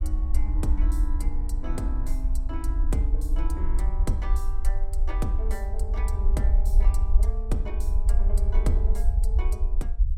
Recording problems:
rumble; below 52 Hz, SNR -10 dB

